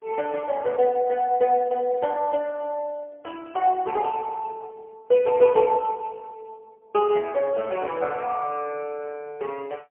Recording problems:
telephone audio; 340 Hz to 3 kHz, AMR-NB, then MP3

